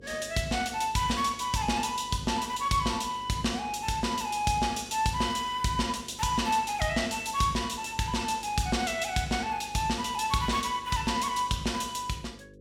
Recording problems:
mains hum; 50 Hz, harmonics up to 550 Hz, SNR 23 dB

